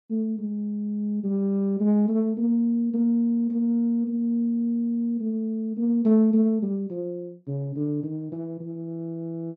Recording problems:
none

